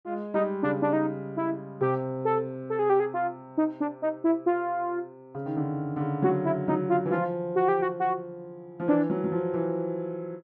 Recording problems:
none

